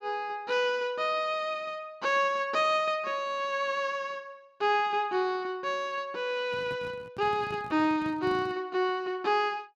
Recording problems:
microphone handling noise; from 6.5 to 8.5 s; peak -8 dB vs average level

